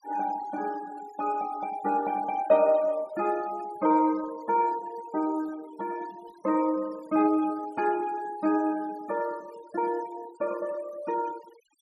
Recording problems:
noise reduction artefacts; signal-to-artefact ratio 21 dB

